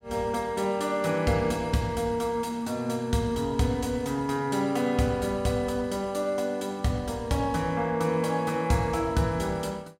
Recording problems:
none

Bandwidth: 16.5 kHz